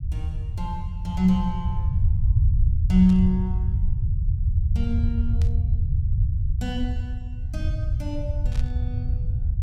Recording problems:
rumble; below 94 Hz, SNR 0 dB
static burst; at 3 s, at 5.5 s and at 8.5 s; peak -13 dB vs average level

